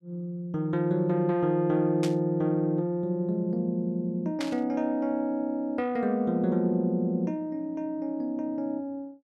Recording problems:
static burst; at 2 s and at 4.5 s; peak -4 dB vs average level

